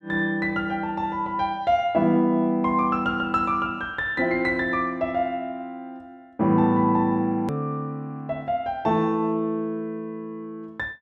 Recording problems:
edit click; at 7.5 s

